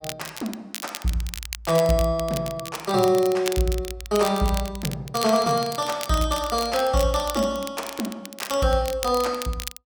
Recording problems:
crackling; vinyl, SNR 11 dB

